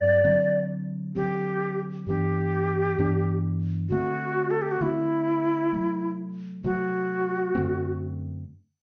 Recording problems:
lossy codec; MP2, log-spectral distance 2 dB, nothing above 6.3 kHz

